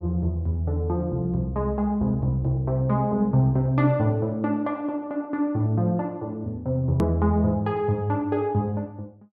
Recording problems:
edit click; at 7 s

